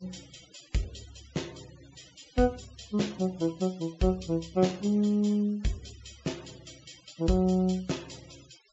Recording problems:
treble cut off; nothing above 7.6 kHz
denoising artefacts; signal-to-artefact ratio 23 dB

